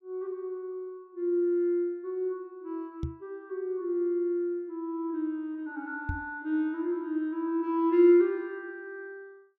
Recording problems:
knock on the microphone; at 3 s and at 6 s; peak 0 dB vs average level

